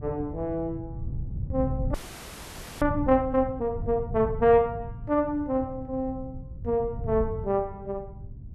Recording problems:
wind noise; below 130 Hz, SNR 9 dB
frozen audio; at 2 s for 1 s

